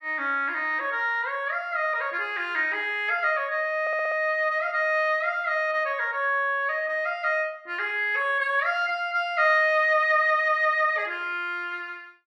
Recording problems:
audio stuttering; at 4 s

